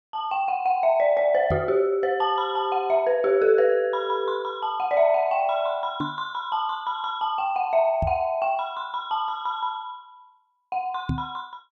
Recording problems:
microphone bump; 4 times, first at 1.5 s; peak 0 dB vs average level

